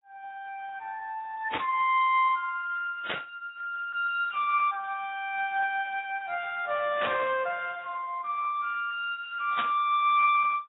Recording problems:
lossy compression; Speex, then AAC, log-spectral distance 3 dB, nothing above 3.2 kHz
static burst; 4 times, first at 1.5 s; peak 0 dB vs average level

